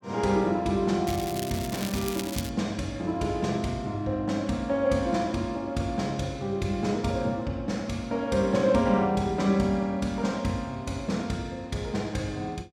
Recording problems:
crackling; from 1 to 2.5 s; loose cable, SNR 10 dB

